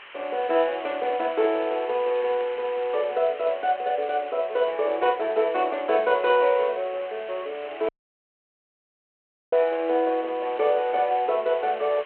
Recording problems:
phone line; 340 Hz to 3.4 kHz, G.726
background hiss; SNR 18 dB
crackle; from 0.5 to 3 s and at 7.5 s; loose cable, SNR 28 dB
audio cutting out; at 8 s for 1.5 s

